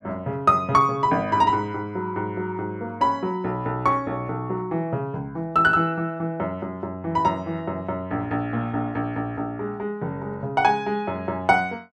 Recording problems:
none

